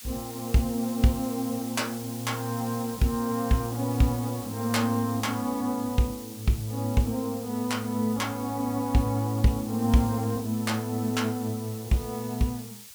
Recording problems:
background hiss; slope +4 dB per octave, SNR 14 dB

